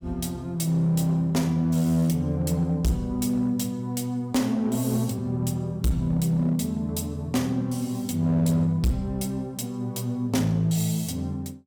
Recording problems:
distorted audio; hard clipping, uneven, signal-to-distortion ratio 11 dB

